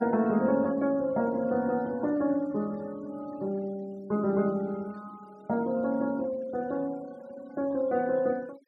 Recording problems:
denoising artefacts; signal-to-artefact ratio 26 dB

